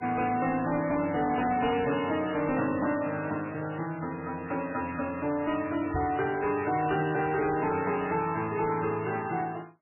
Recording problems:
lossy codec; MP3, log-spectral distance 5 dB, nothing above 2.4 kHz
distorted audio; soft clipping, signal-to-distortion ratio 12 dB
microphone bump; at 6 s; peak -1 dB vs average level

